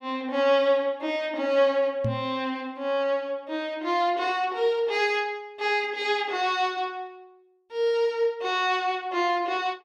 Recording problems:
microphone thump; at 2 s; peak 0 dB vs average level

